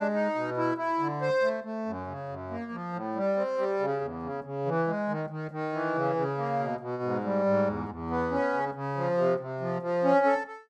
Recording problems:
none

